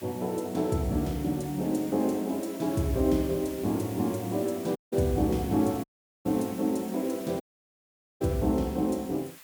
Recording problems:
hiss; SNR 17 dB
audio cutting out; at 5 s, at 6 s and at 7.5 s for 1 s

